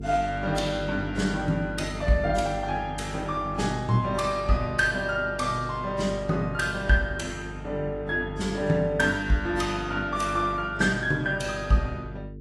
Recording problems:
lossy codec; AAC, log-spectral distance 2 dB, nothing above 11.3 kHz
hum; 50 Hz, harmonics up to 450 Hz, SNR 11 dB

